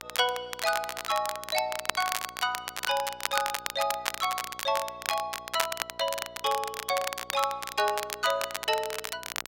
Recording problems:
mains hum; 60 Hz, harmonics up to 1.6 kHz, SNR 24 dB
crackle; vinyl, SNR 4 dB

